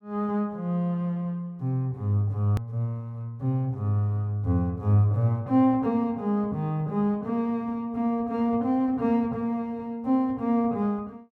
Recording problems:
hard cut with a click; at 2.5 s

